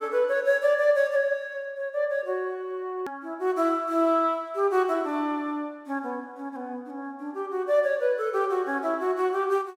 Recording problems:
hard cut with a click; at 3 s

